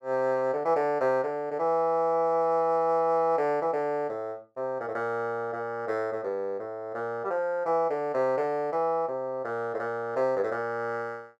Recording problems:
none

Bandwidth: 12.5 kHz